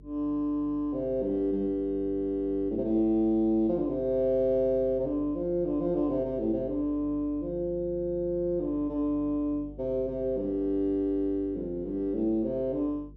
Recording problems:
hum; 50 Hz, harmonics up to 450 Hz, SNR 19 dB

